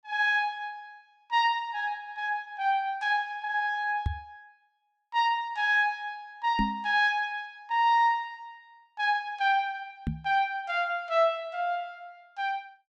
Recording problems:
microphone thump; at 4 s, at 6.5 s and at 10 s; peak +2 dB vs average level

